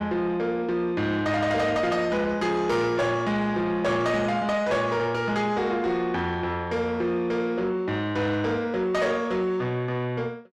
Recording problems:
distortion; soft clipping, signal-to-distortion ratio 11 dB

